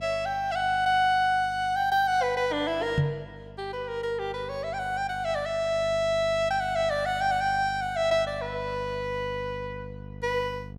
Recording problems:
hum; 50 Hz, harmonics up to 750 Hz, SNR 17 dB
knock on the microphone; at 3 s; peak +6 dB vs average level

